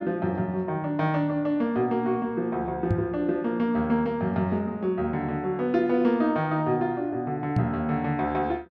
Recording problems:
knock on the microphone; at 3 s and at 7.5 s; peak +5 dB vs average level

